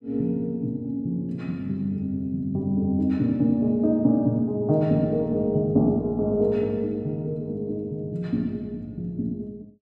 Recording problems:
none

